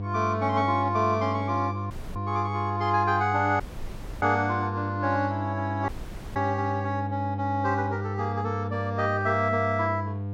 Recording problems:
treble cut off; nothing above 8 kHz
electrical hum; 50 Hz, harmonics up to 700 Hz, SNR 6 dB
dropout; at 2 s, at 3.5 s for 0.5 s and at 6 s

